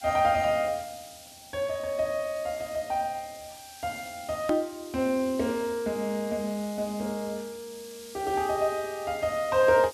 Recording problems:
background hiss; SNR 17 dB
click at an edit; at 4.5 s

